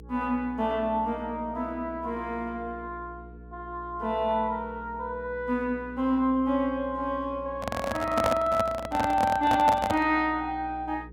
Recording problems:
hum; 60 Hz, harmonics up to 480 Hz, SNR 18 dB
microphone handling noise; from 7.5 to 10 s; peak +4 dB vs average level

